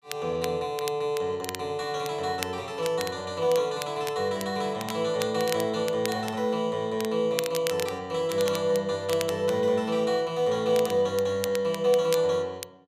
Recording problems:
crackling; vinyl, SNR 12 dB

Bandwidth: 14.5 kHz